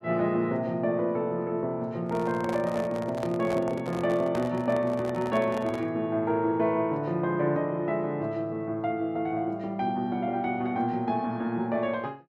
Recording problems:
handling noise; from 2 to 6 s; peak -5 dB vs average level

